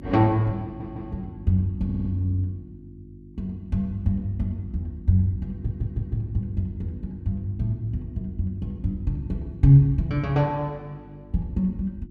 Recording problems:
mains hum; 50 Hz, harmonics up to 350 Hz, SNR 18 dB
stutter; at 0.5 s, at 2 s and at 5.5 s

